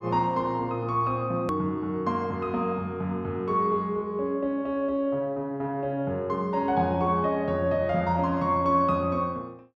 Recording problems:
hard cut with a click; at 1.5 s

